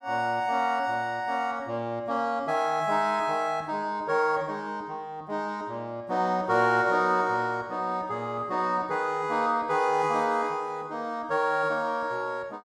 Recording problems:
none

